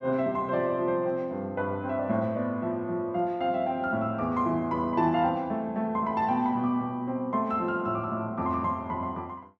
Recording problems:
none

